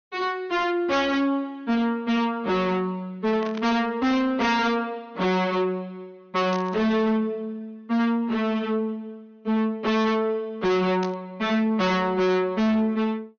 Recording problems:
treble missing; nothing above 6.5 kHz
distortion; soft clipping, signal-to-distortion ratio 6 dB
static burst; at 3.5 s, at 6.5 s and at 11 s; peak -9 dB vs average level

